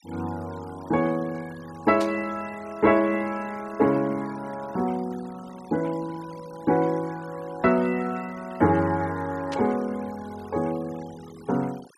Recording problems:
denoising artefacts; signal-to-artefact ratio 22 dB
static burst; at 2 s and at 9.5 s; peak -6 dB vs average level

